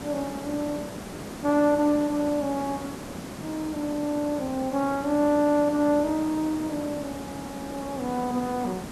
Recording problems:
background hiss; slope -6 dB per octave, SNR 11 dB

